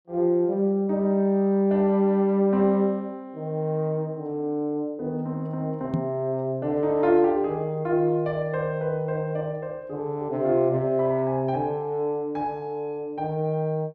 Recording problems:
microphone bump; at 6 s; peak +2 dB vs average level

